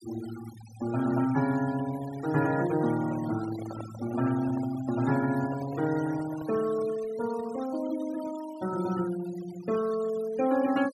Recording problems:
noise reduction artefacts; signal-to-artefact ratio 16 dB
microphone handling noise; from 3 to 6.5 s; peak -9 dB vs average level

